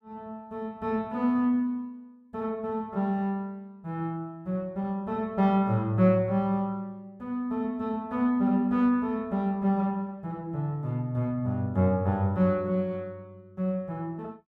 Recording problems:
none

